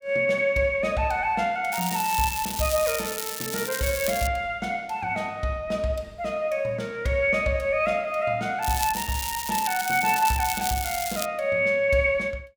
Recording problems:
crackle; from 1.5 to 4.5 s and from 8.5 to 11 s; loose cable, SNR 5 dB

